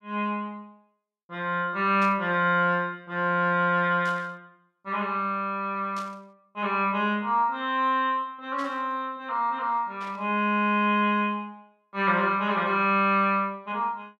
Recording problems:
static burst; 5 times, first at 2 s; peak -13 dB vs average level

